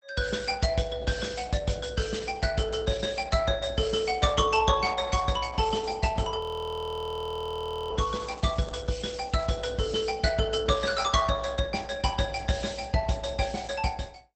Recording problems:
lossy compression; Opus, log-spectral distance 6 dB, nothing above 20.1 kHz
audio freezing; at 6.5 s for 1.5 s
crackle; from 8 to 9.5 s; loose cable, SNR 24 dB

